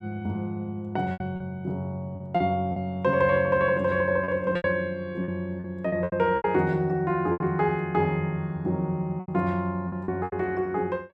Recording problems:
packet loss; 9% of the sound replaced, filled with repeated pitch periods

